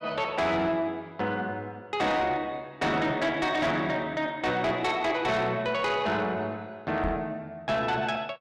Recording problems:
distorted audio; soft clipping, signal-to-distortion ratio 11 dB
microphone bump; at 7 s; peak -1 dB vs average level

